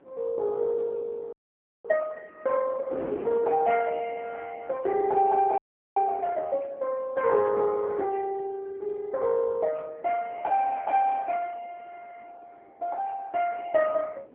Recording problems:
phone line; 260 Hz to 2.3 kHz, AMR-NB
wind noise; below 580 Hz, SNR 19 dB
audio freezing; at 1.5 s for 0.5 s and at 5.5 s

